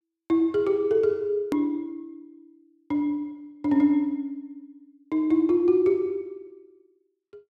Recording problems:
hard cut with a click; at 1.5 s

